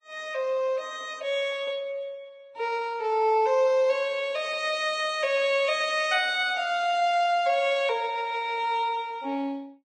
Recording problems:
lossy compression; Vorbis, log-spectral distance 2 dB

